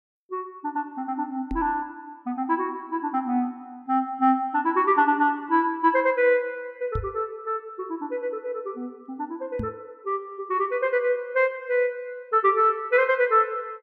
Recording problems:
microphone bump; at 1.5 s, at 7 s and at 9.5 s; peak -2 dB vs average level

